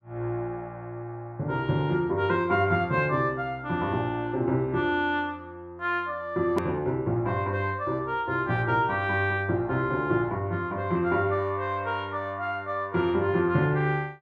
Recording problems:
click at an edit; at 6.5 s

